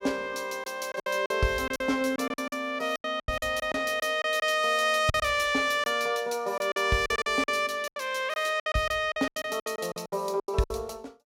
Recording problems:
packet loss; 14% of the sound replaced, filled with silence

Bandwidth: 16.5 kHz